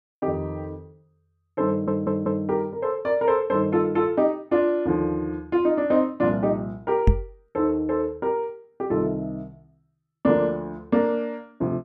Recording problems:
stutter; at 1.5 s
knock on the microphone; at 7 s; peak +8 dB vs average level

